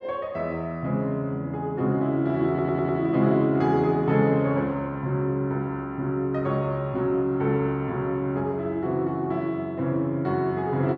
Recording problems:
stutter; at 2.5 s

